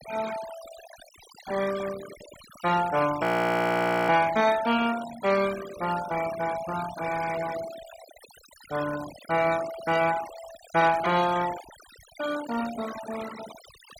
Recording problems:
noise reduction artefacts; signal-to-artefact ratio 13 dB
frozen audio; at 3 s for 1 s

